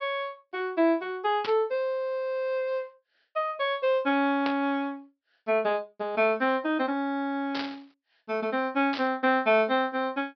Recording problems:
low-pass filter; nothing above 5.5 kHz
burst of static; 4 times, first at 1.5 s; peak -3 dB vs average level

